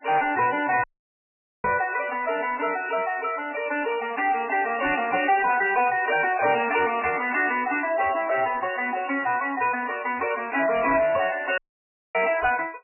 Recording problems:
lossy compression; MP3, log-spectral distance 6 dB, nothing above 2.4 kHz
distorted audio; soft clipping, signal-to-distortion ratio 10 dB
dropout; at 1 s for 1 s and at 12 s for 0.5 s
microphone bump; at 1.5 s; peak -9 dB vs average level

